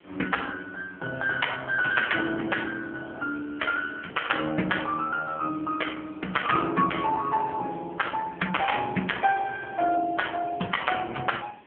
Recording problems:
telephone audio; 150 Hz to 3.4 kHz, AMR-NB
background hiss; SNR 28 dB

